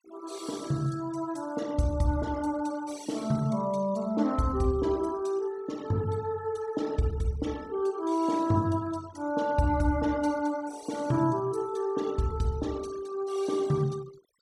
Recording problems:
denoising artefacts; signal-to-artefact ratio 21 dB

